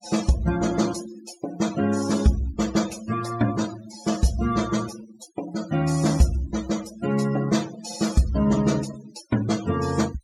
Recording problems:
denoising artefacts; signal-to-artefact ratio 14 dB

